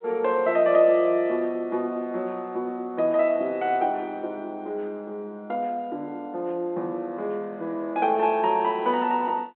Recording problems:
telephone audio; 240 Hz to 3.4 kHz, G.726

